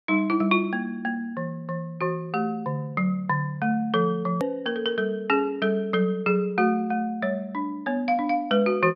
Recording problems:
treble cut off; nothing above 5.5 kHz
edit click; at 4.5 s

